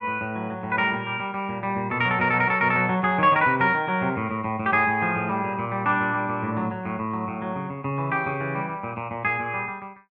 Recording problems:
none

